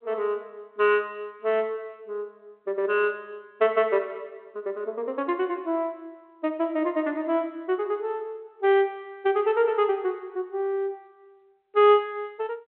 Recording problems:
telephone audio; 260 Hz to 3.3 kHz, G.726

